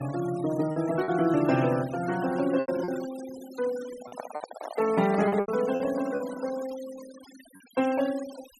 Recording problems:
denoising artefacts; signal-to-artefact ratio 17 dB
packet loss; 6% of the sound replaced, filled with repeated pitch periods
handling noise; from 4 to 5.5 s; peak -3 dB vs average level

